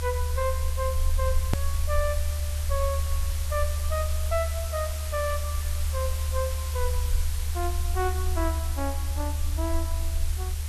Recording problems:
background hiss; slope 0 dB per octave, SNR 5 dB
rumble; below 76 Hz, strongest tone 74 Hz, SNR -4 dB
click at an edit; at 1.5 s

